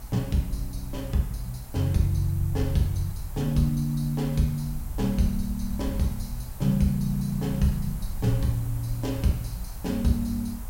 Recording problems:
background hiss; SNR 18 dB
rumble; below 70 Hz, SNR 10 dB

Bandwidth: 16 kHz